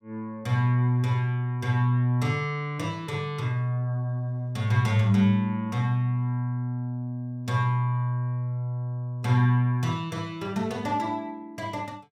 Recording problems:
none

